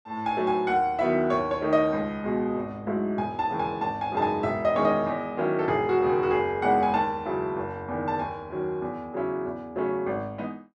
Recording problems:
none

